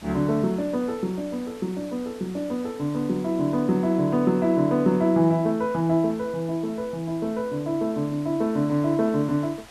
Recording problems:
hiss; SNR 22 dB

